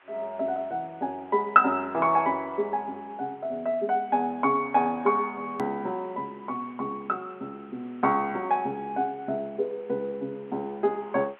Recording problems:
telephone audio; 280 Hz to 3.4 kHz, G.711
hiss; SNR 29 dB
edit click; at 5.5 s

